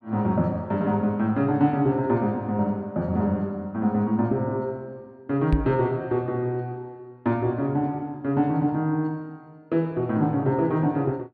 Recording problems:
microphone bump; at 5.5 s; peak +5 dB vs average level

